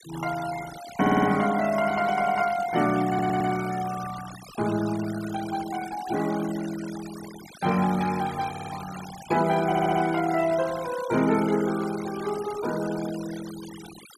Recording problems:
denoising artefacts; signal-to-artefact ratio 15 dB
audio stuttering; 4 times, first at 1 s

